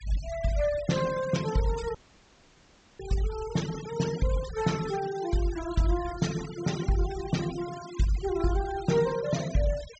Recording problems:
treble missing; nothing above 8 kHz
denoising artefacts; signal-to-artefact ratio 13 dB
audio cutting out; at 2 s for 1 s

